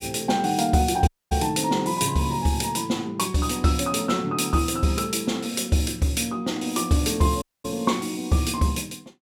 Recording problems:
dropout; at 1 s and at 7.5 s

